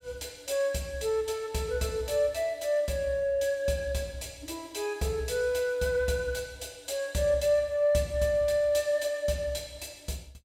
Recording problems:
none

